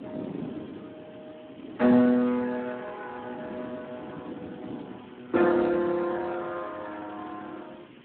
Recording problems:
telephone audio; 190 Hz to 2.5 kHz, Speex
hiss; SNR 27 dB
wind noise; below 390 Hz, SNR 16 dB

